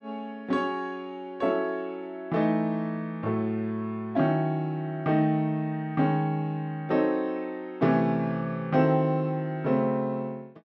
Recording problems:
none

